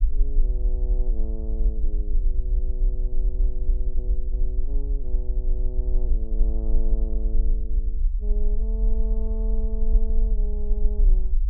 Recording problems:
rumble; below 42 Hz, strongest tone 22 Hz, SNR -14 dB

